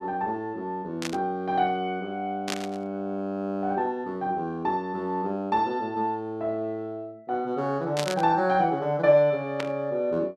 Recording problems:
burst of static; 4 times, first at 1 s; peak +1 dB vs average level

